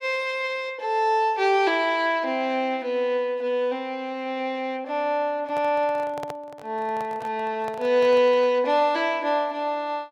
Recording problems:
microphone handling noise; from 5.5 to 8.5 s; peak -8 dB vs average level

